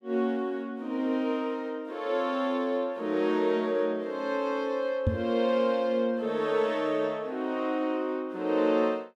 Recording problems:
microphone bump; at 5 s; peak +5 dB vs average level

